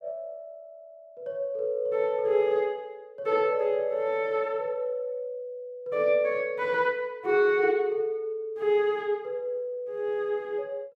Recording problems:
none

